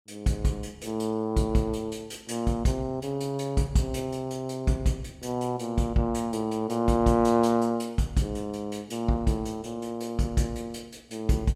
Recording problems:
none

